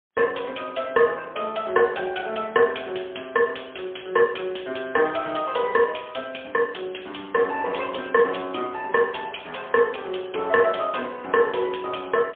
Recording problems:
telephone audio; 240 Hz to 3.5 kHz, AMR-NB, then MP3

